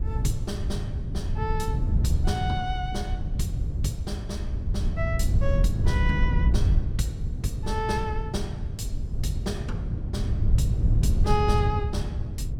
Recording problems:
wind on the microphone; below 110 Hz, SNR -5 dB

